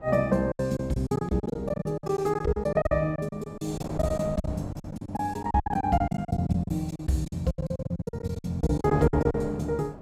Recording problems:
wind on the microphone; below 650 Hz, SNR 14 dB
packet loss; 20% of the sound replaced, filled with silence

